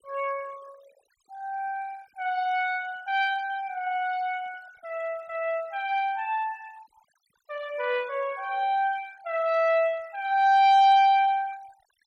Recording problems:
denoising artefacts; signal-to-artefact ratio 26 dB

